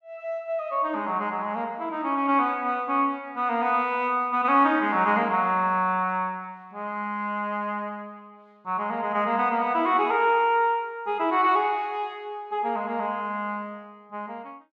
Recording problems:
none

